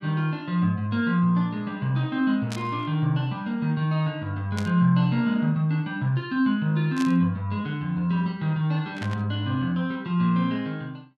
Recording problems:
static burst; 4 times, first at 2.5 s; peak -7 dB vs average level

